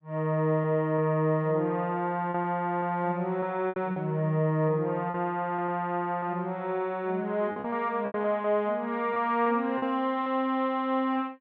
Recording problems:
lost packets; 6% of the sound replaced, filled with repeated pitch periods

